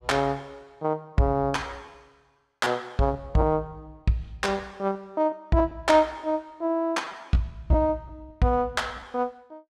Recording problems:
packet loss; 7% of the sound replaced, filled with repeated pitch periods

